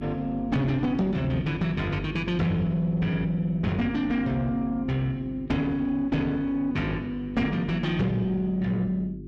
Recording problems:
distorted audio; soft clipping, signal-to-distortion ratio 11 dB
hum; 50 Hz, harmonics up to 400 Hz, SNR 11 dB

